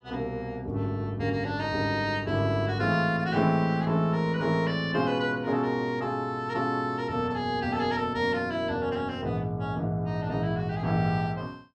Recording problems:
none

